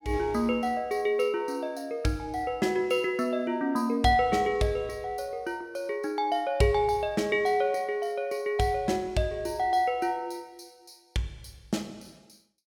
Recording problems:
none

